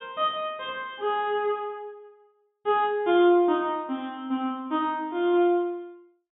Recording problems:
low-pass filter; nothing above 4 kHz

